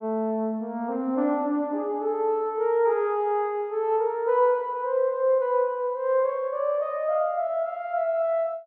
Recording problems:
none

